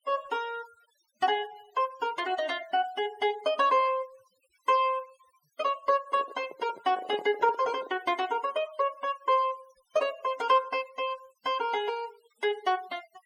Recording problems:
noise reduction artefacts; signal-to-artefact ratio 23 dB
handling noise; from 6 to 8 s; peak -6 dB vs average level

